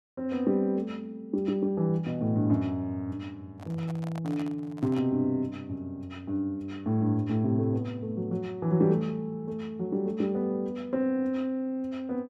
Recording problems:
handling noise; from 3.5 to 5 s; peak -10 dB vs average level

